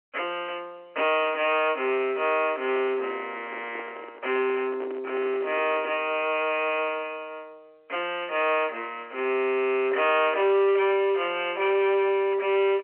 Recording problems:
phone line; 320 Hz to 3.3 kHz, G.711
distorted audio; soft clipping, signal-to-distortion ratio 12 dB
microphone handling noise; from 2.5 to 6 s; peak -9 dB vs average level

